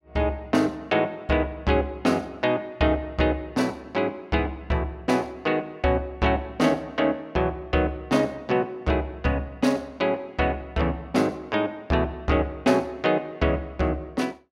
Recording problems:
none

